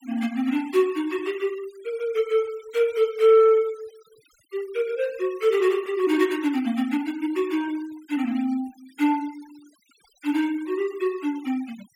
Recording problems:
noise reduction artefacts; signal-to-artefact ratio 23 dB

